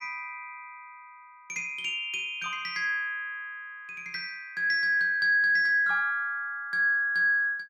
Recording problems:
none

